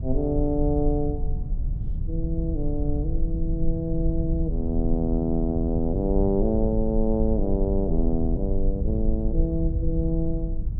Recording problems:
low-frequency rumble; below 68 Hz, SNR 2 dB

